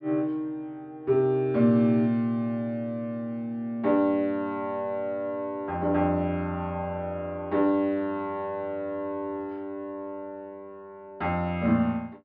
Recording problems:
low-pass filter; nothing above 5.5 kHz

